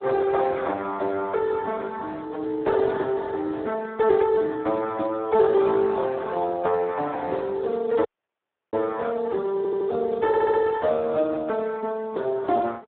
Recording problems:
telephone audio; 300 Hz to 2 kHz, Speex
dropout; at 8 s for 0.5 s
stutter; at 9.5 s and at 10 s

